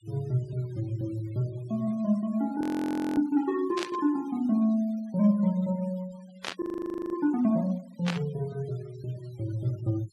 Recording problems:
denoising artefacts; signal-to-artefact ratio 25 dB
frozen audio; at 2.5 s for 0.5 s and at 6.5 s for 0.5 s
static burst; at 4 s, at 6.5 s and at 8 s; peak 0 dB vs average level

